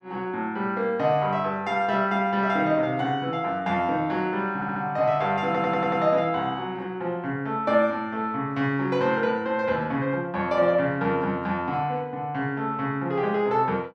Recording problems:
stutter; at 4.5 s and at 5.5 s

